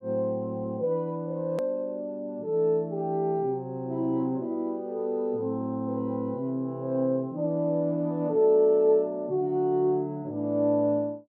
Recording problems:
edit click; at 1.5 s

